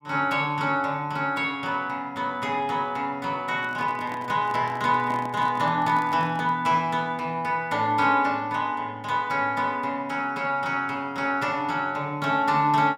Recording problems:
handling noise; from 3.5 to 6.5 s; peak -9 dB vs average level

